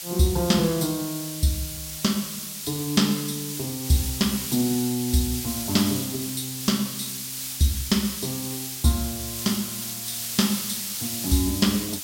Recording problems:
background hiss; SNR 4 dB

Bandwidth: 16.5 kHz